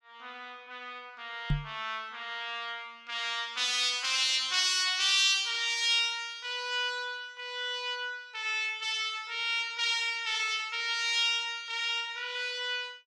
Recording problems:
microphone bump; at 1.5 s; peak +3 dB vs average level

